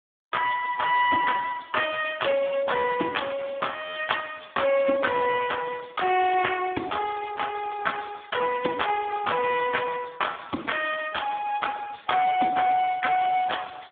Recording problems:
telephone audio; 190 Hz to 3.4 kHz, Speex

